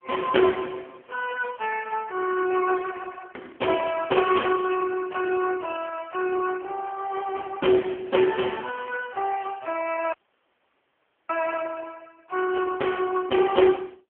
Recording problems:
phone line; 280 Hz to 3.3 kHz, AMR-NB
dropout; at 10 s for 1 s

